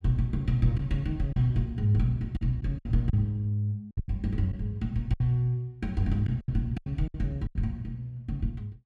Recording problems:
lost packets; 8% of the sound replaced, filled with silence

